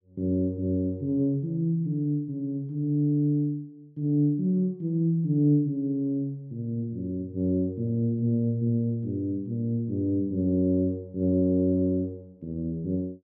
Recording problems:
none

